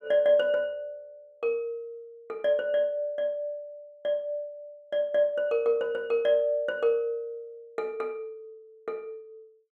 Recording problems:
none

